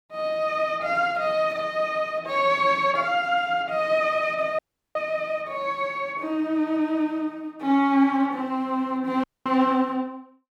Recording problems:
dropout; at 4.5 s and at 9 s

